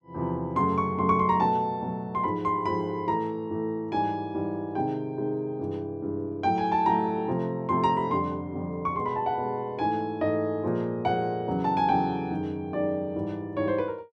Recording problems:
none

